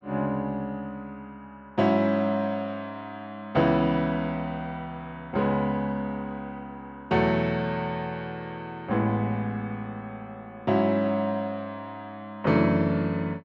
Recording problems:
none

